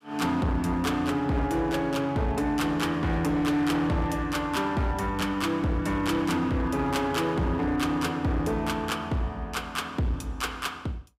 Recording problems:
distortion; hard clipping, uneven, signal-to-distortion ratio 11 dB

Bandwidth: 15.5 kHz